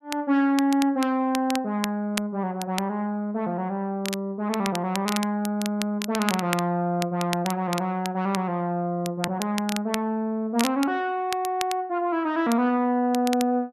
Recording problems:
crackling; vinyl, SNR 10 dB

